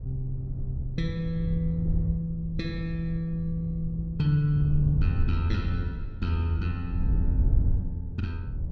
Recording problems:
wind on the microphone; below 90 Hz, SNR 2 dB

